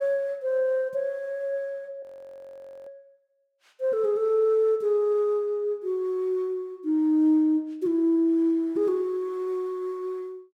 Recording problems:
audio freezing; at 2 s for 1 s

